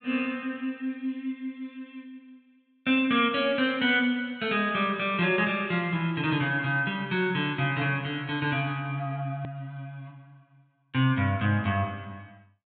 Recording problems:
treble cut off; nothing above 4 kHz
hard cut with a click; at 9.5 s

